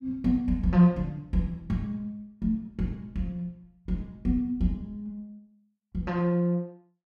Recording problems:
none

